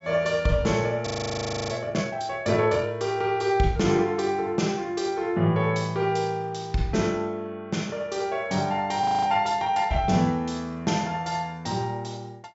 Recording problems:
treble missing; nothing above 8 kHz
audio freezing; at 1 s for 0.5 s and at 9 s

